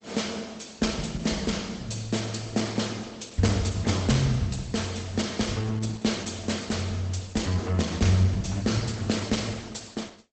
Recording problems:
codec artefacts; Opus, log-spectral distance 6 dB, nothing above 8 kHz

